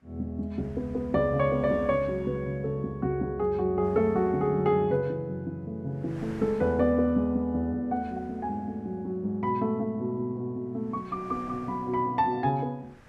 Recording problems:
wind on the microphone; below 1.6 kHz, SNR 24 dB

